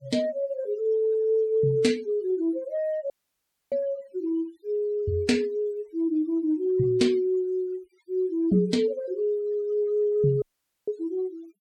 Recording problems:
denoising artefacts; signal-to-artefact ratio 25 dB
dropout; at 3 s for 0.5 s and at 10 s

